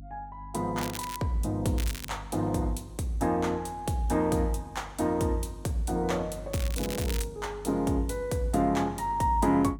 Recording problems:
hum; 50 Hz, harmonics up to 300 Hz, SNR 16 dB
crackle; at 1 s, at 2 s and at 6.5 s; loose cable, SNR 11 dB

